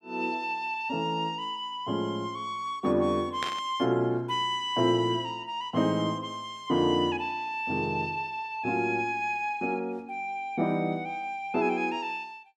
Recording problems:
burst of static; at 3.5 s; peak 0 dB vs average level

